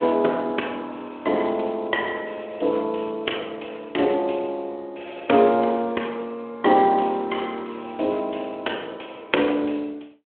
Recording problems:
phone line; 260 Hz to 3.4 kHz, Speex

